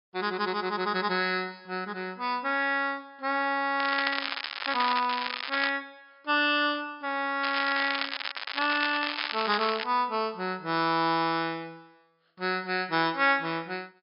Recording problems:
low-pass filter; nothing above 5.5 kHz
crackling; from 4 to 5.5 s and from 7.5 to 10 s; loose cable, SNR 4 dB

